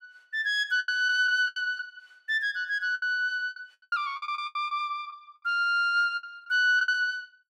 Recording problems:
packet loss; 12% of the sound replaced, filled with the last packet

